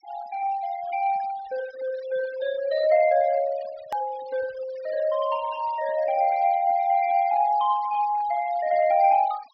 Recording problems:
treble missing; nothing above 5.5 kHz
noise reduction artefacts; signal-to-artefact ratio 21 dB
hard cut with a click; at 4 s

